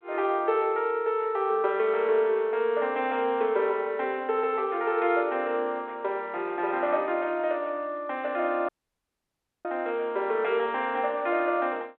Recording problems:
telephone audio; 300 Hz to 3.9 kHz, G.726
audio cutting out; at 8.5 s for 1 s

